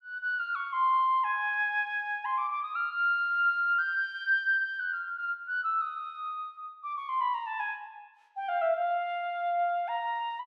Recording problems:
none

